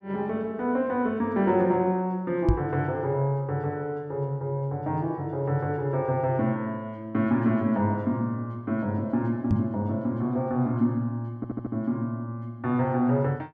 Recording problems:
microphone thump; at 2.5 s and at 9.5 s; peak +7 dB vs average level
audio stuttering; at 11 s

